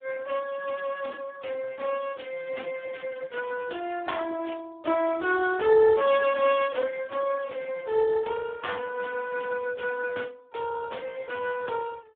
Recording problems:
phone line; 240 Hz to 2.8 kHz, Speex

